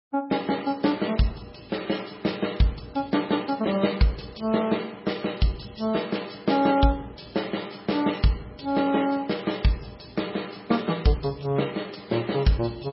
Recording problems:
lossy codec; MP3, log-spectral distance 7 dB, nothing above 5.3 kHz

